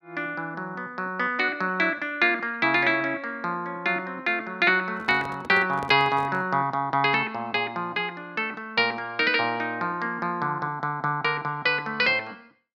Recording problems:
microphone handling noise; from 5 to 6.5 s; peak -8 dB vs average level

